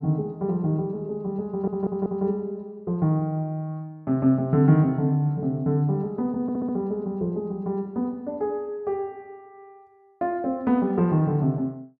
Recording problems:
audio stuttering; at 1.5 s and at 6.5 s

